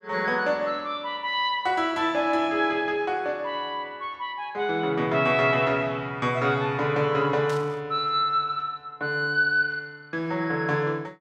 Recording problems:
burst of static; at 7.5 s; peak -10 dB vs average level

